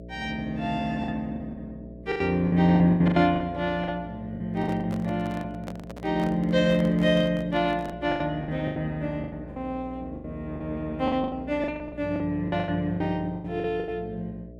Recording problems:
hum; 60 Hz, harmonics up to 660 Hz, SNR 16 dB
lost packets; 13% of the sound replaced, filled with the last packet
handling noise; from 4.5 to 8 s; peak -7 dB vs average level

